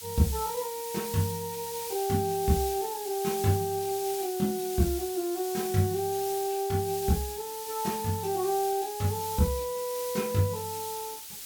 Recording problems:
hiss; SNR 8 dB

